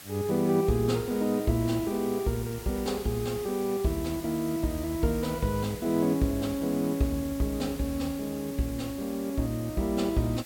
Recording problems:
background hiss; slope 0 dB per octave, SNR 15 dB

